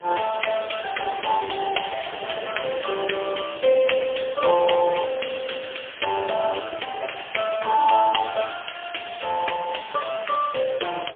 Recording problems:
phone line; 340 Hz to 3.4 kHz, AMR-NB, then MP3
wind noise; below 1.2 kHz, SNR 15 dB

